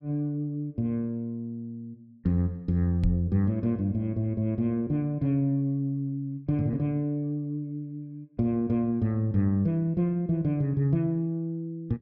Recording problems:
microphone bump; at 3 s; peak +3 dB vs average level

